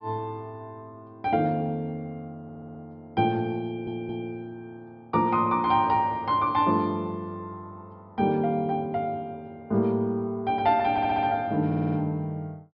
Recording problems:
treble missing; nothing above 5.5 kHz
stutter; 4 times, first at 2.5 s

